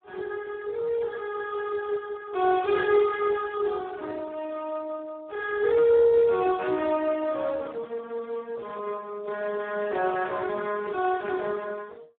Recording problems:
phone line; 280 Hz to 2 kHz, Speex

